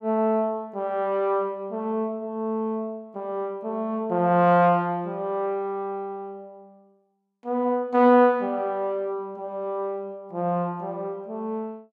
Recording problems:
none

